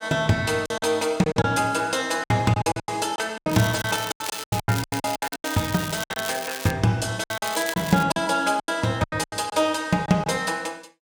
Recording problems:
packet loss; 15% of the sound replaced, filled with silence
crackling; from 3.5 to 6.5 s and at 7.5 s; loose cable, SNR 10 dB

